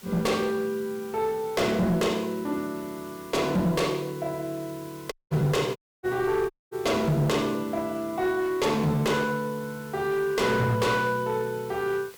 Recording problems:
distortion; hard clipping, uneven, signal-to-distortion ratio 10 dB
hiss; slope -1 dB per octave, SNR 21 dB
dropout; at 5 s, at 6 s and at 6.5 s

